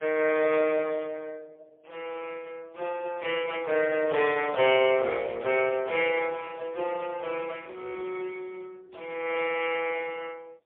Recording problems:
telephone audio; 340 Hz to 3.3 kHz, AMR-NB, then MP3

